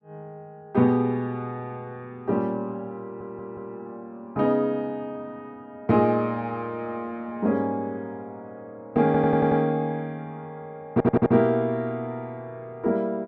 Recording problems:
audio stuttering; at 3 s, at 9 s and at 11 s

